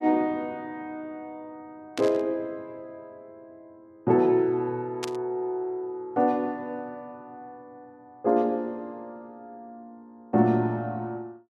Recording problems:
static burst; at 2 s and at 5 s; peak -2 dB vs average level

